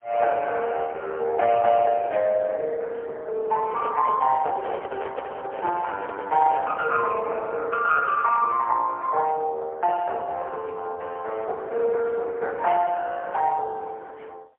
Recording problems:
phone line; 370 Hz to 3.6 kHz, AMR-NB, then MP3
handling noise; from 3.5 to 7 s; peak -3 dB vs average level

